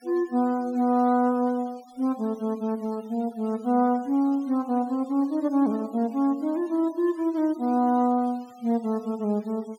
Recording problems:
denoising artefacts; signal-to-artefact ratio 27 dB

